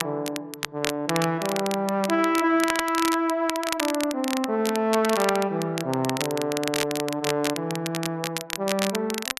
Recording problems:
crackle; vinyl, SNR 6 dB

